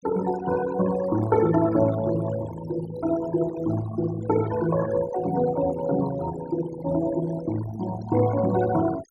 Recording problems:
denoising artefacts; signal-to-artefact ratio 13 dB

